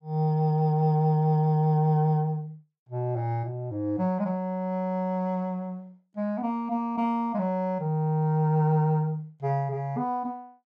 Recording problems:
none

